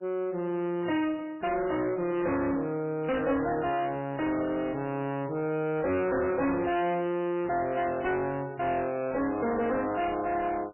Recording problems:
lossy compression; MP3, log-spectral distance 3 dB, nothing above 2.8 kHz
distorted audio; soft clipping, signal-to-distortion ratio 7 dB

